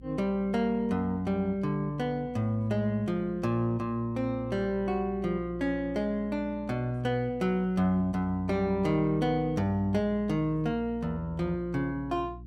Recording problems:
electrical hum; 60 Hz, harmonics up to 360 Hz, SNR 18 dB

